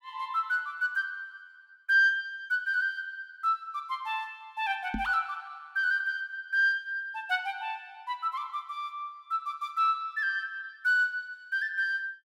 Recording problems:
microphone bump; at 5 s; peak -1 dB vs average level

